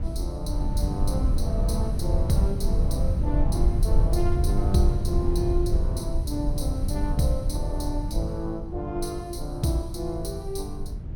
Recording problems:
low-frequency rumble; below 86 Hz, SNR -3 dB

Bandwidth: 17.5 kHz